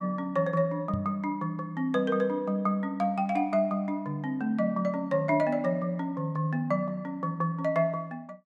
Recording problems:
microphone bump; at 1 s; peak -1 dB vs average level

